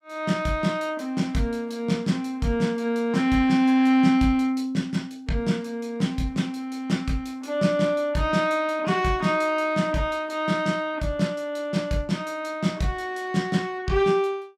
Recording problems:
none

